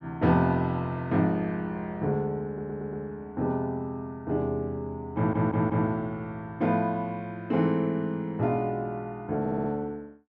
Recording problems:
stutter; at 2.5 s, at 5 s and at 9.5 s

